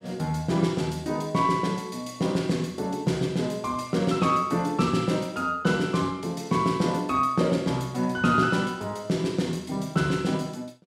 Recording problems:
none

